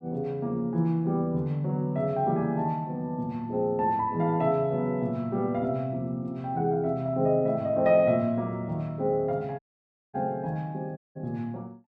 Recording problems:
dropout; at 9.5 s for 0.5 s and at 11 s

